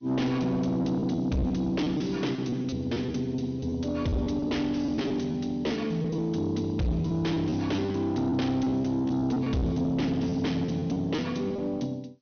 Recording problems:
low-pass filter; nothing above 6.3 kHz
lossy codec; G.722, log-spectral distance 3 dB
distorted audio; soft clipping, signal-to-distortion ratio 11 dB
packet loss; 9% of the sound replaced, filled with repeated pitch periods

